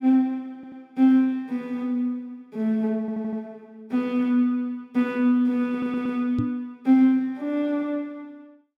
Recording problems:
stutter; at 0.5 s, at 3 s and at 5.5 s
microphone bump; at 6.5 s; peak +1 dB vs average level

